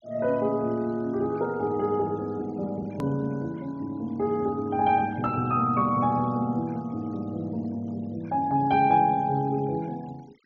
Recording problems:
low-pass filter; nothing above 6.8 kHz
denoising artefacts; signal-to-artefact ratio 28 dB
hard cut with a click; at 3 s

